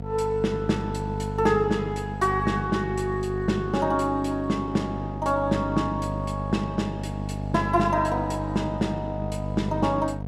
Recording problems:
electrical hum; 50 Hz, harmonics up to 750 Hz, SNR 6 dB

